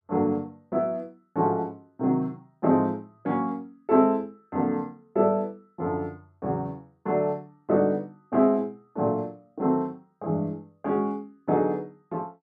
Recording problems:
none

